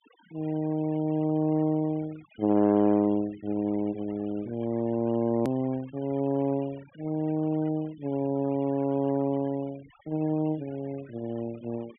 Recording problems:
treble missing; nothing above 3.3 kHz
noise reduction artefacts; signal-to-artefact ratio 24 dB
edit click; at 5.5 s

